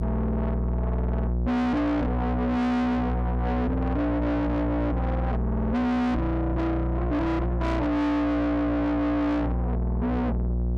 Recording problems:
distorted audio; soft clipping, signal-to-distortion ratio 6 dB
hum; 60 Hz, harmonics up to 780 Hz, SNR 1 dB

